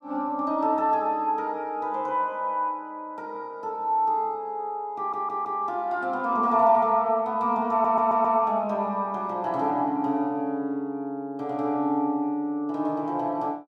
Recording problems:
stutter; at 5 s and at 7.5 s

